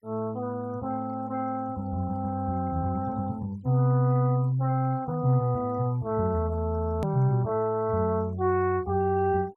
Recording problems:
noise reduction artefacts; signal-to-artefact ratio 28 dB
hard cut with a click; at 7 s

